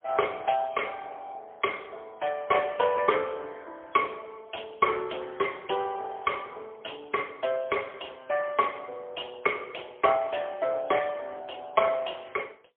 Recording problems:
telephone audio; 320 Hz to 3.3 kHz, AMR-NB, then MP3

